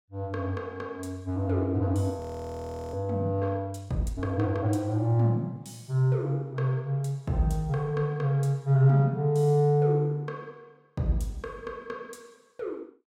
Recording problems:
audio freezing; at 2 s for 0.5 s

